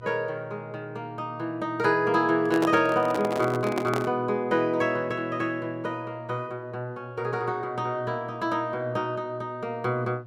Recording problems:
electrical hum; 60 Hz, harmonics up to 720 Hz, SNR 17 dB
handling noise; from 2.5 to 4 s; peak +2 dB vs average level

